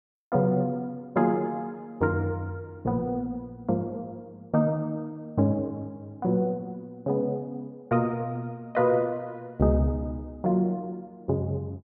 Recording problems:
none

